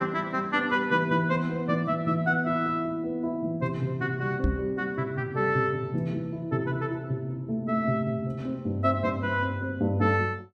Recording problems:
knock on the microphone; at 4.5 s; peak +5 dB vs average level

